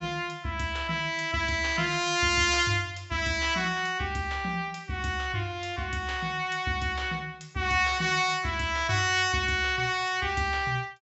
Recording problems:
treble missing; nothing above 7.6 kHz

